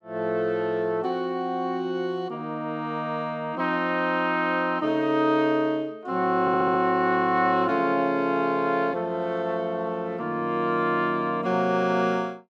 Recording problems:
audio stuttering; at 6.5 s

